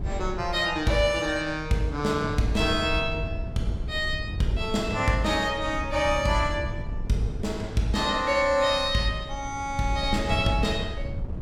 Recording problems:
wind on the microphone; below 110 Hz, SNR 10 dB

